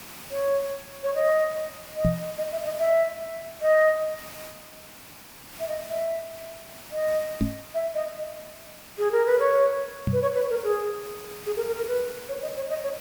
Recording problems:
background hiss; slope -2 dB per octave, SNR 15 dB
microphone thump; at 2 s, at 7.5 s and at 10 s; peak +6 dB vs average level

